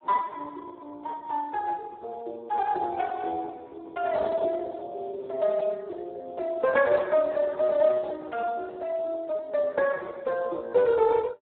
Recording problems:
telephone audio; 320 Hz to 2.8 kHz, Speex

